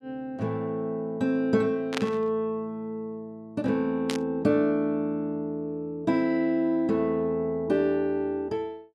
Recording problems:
static burst; at 2 s and at 4 s; peak +1 dB vs average level

